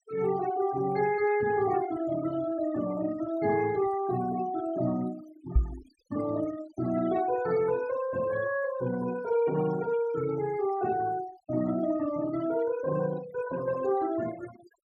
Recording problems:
denoising artefacts; signal-to-artefact ratio 16 dB
microphone thump; at 5.5 s; peak +9 dB vs average level

